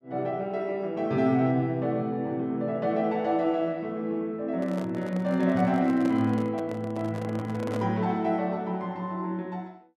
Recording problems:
microphone handling noise; from 4.5 to 8 s; peak -5 dB vs average level

